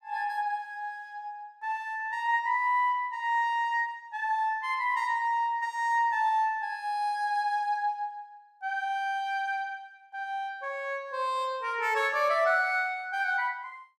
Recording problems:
none

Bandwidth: 14.5 kHz